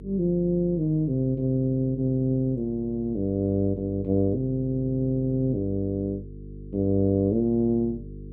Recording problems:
electrical hum; 50 Hz, harmonics up to 450 Hz, SNR 15 dB

